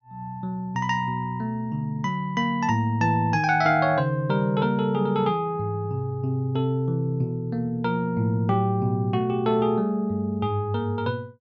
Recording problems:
low-pass filter; nothing above 6.6 kHz

